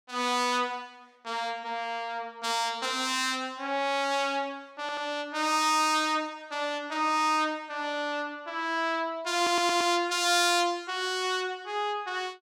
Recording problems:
stutter; at 5 s and at 9.5 s

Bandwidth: 17 kHz